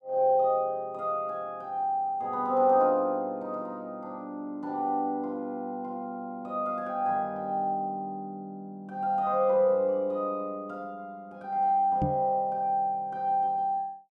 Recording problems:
microphone bump; at 12 s; peak +2 dB vs average level

